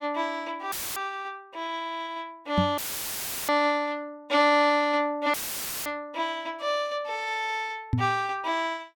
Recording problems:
audio cutting out; at 0.5 s, at 3 s for 0.5 s and at 5.5 s for 0.5 s; filled with static
knock on the microphone; at 2.5 s, at 6 s and at 8 s; peak +6 dB vs average level

